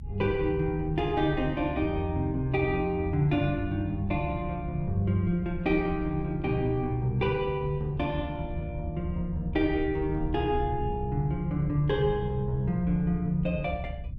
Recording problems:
low-frequency rumble; below 88 Hz, SNR 10 dB

